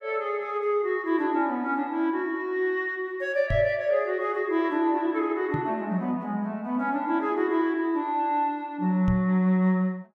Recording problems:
microphone thump; at 3.5 s, at 5.5 s and at 9 s; peak +1 dB vs average level

